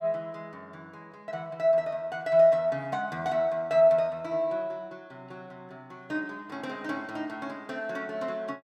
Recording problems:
none

